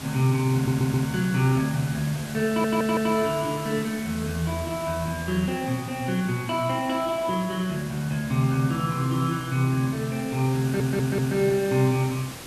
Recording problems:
background hiss; slope -3 dB per octave, SNR 14 dB
stutter; at 0.5 s, at 2.5 s and at 11 s

